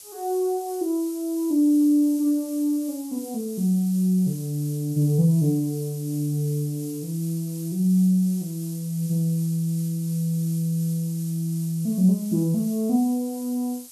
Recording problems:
hiss; SNR 17 dB

